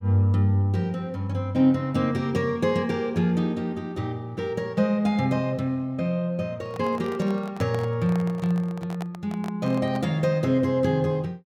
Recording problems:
handling noise; from 6.5 to 10 s; peak -8 dB vs average level

